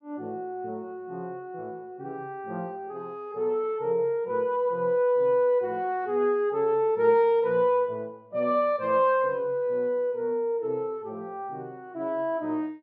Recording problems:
none

